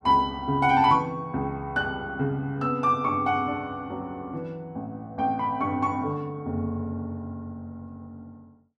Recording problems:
none

